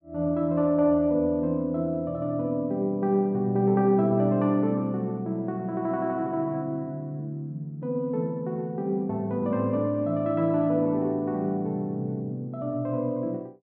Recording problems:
none

